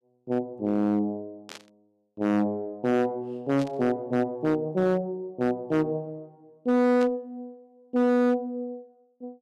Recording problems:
distorted audio; hard clipping, signal-to-distortion ratio 10 dB
static burst; at 1.5 s, at 3.5 s and at 7 s; peak -11 dB vs average level

